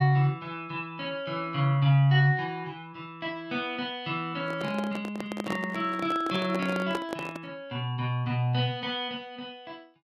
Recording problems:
handling noise; from 4.5 to 7.5 s; peak -1 dB vs average level

